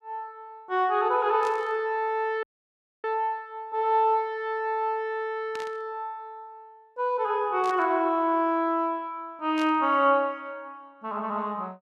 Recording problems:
static burst; 4 times, first at 1.5 s; peak -10 dB vs average level
dropout; at 2.5 s for 0.5 s

